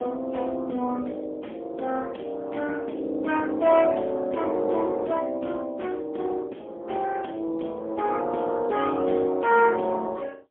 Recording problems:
phone line; 220 Hz to 3.4 kHz, AMR-NB, then MP3

